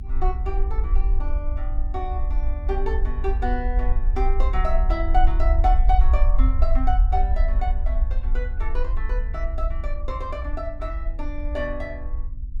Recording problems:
hum; 50 Hz, harmonics up to 300 Hz, SNR 13 dB
rumble; below 50 Hz, SNR -5 dB

